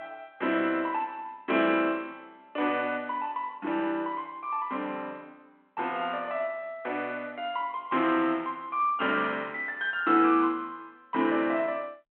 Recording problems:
phone line; 220 Hz to 3.3 kHz, G.726

